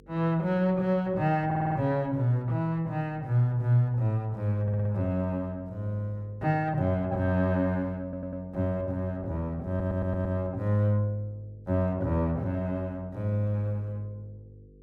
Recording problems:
hum; 50 Hz, harmonics up to 500 Hz, SNR 27 dB
audio stuttering; 4 times, first at 1.5 s

